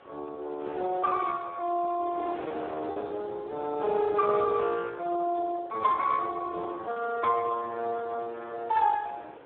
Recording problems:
phone line; 280 Hz to 2.1 kHz, Speex
wind on the microphone; below 1 kHz, SNR 16 dB
packet loss; 2% of the sound replaced, filled with repeated pitch periods

